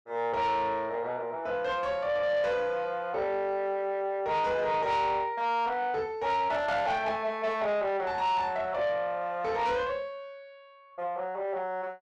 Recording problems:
distortion; soft clipping, signal-to-distortion ratio 12 dB

